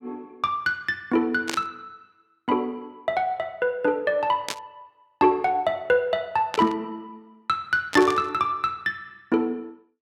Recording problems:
burst of static; 4 times, first at 1.5 s; peak 0 dB vs average level

